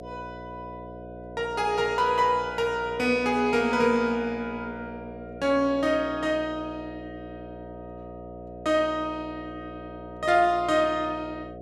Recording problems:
hum; 60 Hz, harmonics up to 720 Hz, SNR 15 dB

